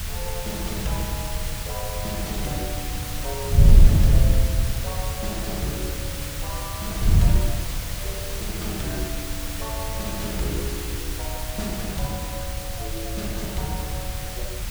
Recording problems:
background hiss; slope 0 dB per octave, SNR 0 dB
wind on the microphone; below 90 Hz, SNR -6 dB

